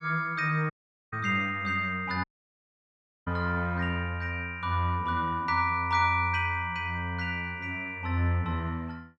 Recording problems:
audio cutting out; at 0.5 s and at 2 s for 1 s

